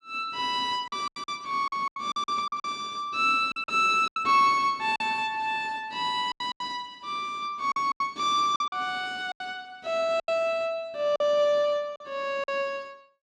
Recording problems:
packet loss; 10% of the sound replaced, filled with silence

